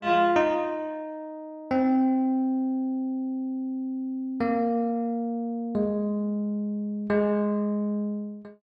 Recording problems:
none

